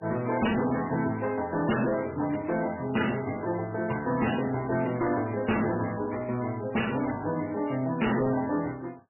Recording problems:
lossy codec; MP3, log-spectral distance 9 dB, nothing above 2.9 kHz
distortion; hard clipping, signal-to-distortion ratio 6 dB

